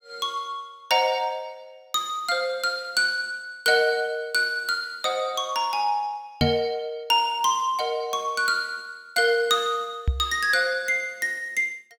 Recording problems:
knock on the microphone; at 6.5 s and at 10 s; peak +4 dB vs average level

